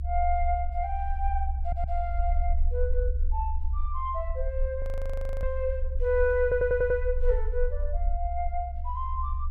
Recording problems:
rumble; below 68 Hz, strongest tone 22 Hz, SNR 1 dB
audio stuttering; at 1.5 s and at 6.5 s
frozen audio; at 5 s for 0.5 s

